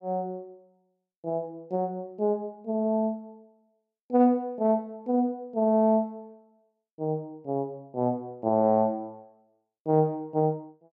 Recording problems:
none

